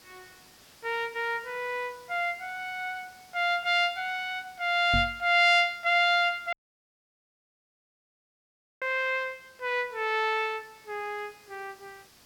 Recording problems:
background hiss; slope -1 dB per octave, SNR 27 dB
microphone thump; at 5 s; peak 0 dB vs average level
dropout; at 6.5 s for 2.5 s

